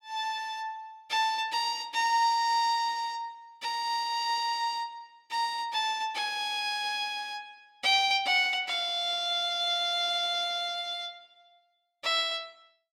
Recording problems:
none

